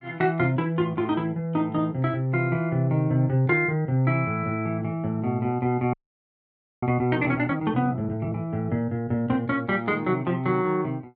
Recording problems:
frozen audio; at 6 s for 1 s

